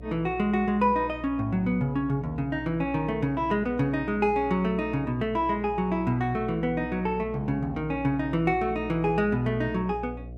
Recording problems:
hum; 60 Hz, harmonics up to 720 Hz, SNR 15 dB

